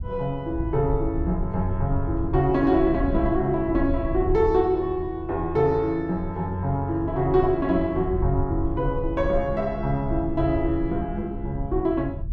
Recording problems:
low-frequency rumble; below 84 Hz, SNR 8 dB

